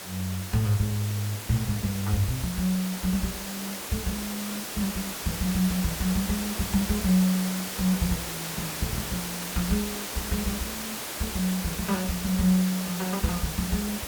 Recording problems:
background hiss; slope -2 dB per octave, SNR 4 dB

